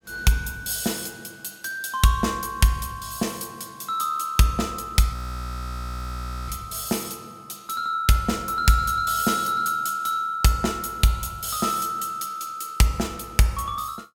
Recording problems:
frozen audio; at 5 s for 1.5 s

